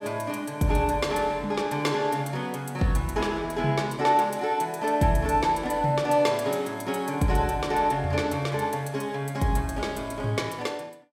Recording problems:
none

